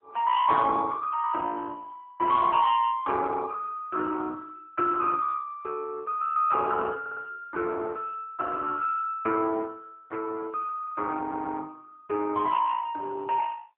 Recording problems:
telephone audio; 280 Hz to 3.1 kHz, AMR-NB
stutter; at 7 s and at 11 s

